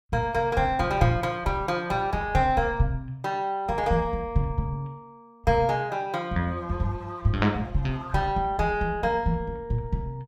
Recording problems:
none

